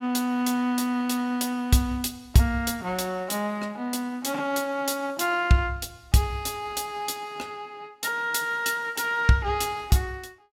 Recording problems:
none

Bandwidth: 16.5 kHz